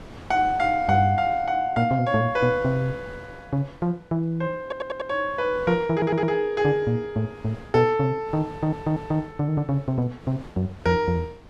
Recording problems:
wind noise; below 700 Hz, SNR 21 dB
stutter; at 4.5 s, at 6 s and at 8.5 s

